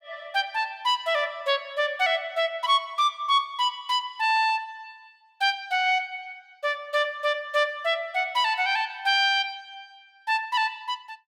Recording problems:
none

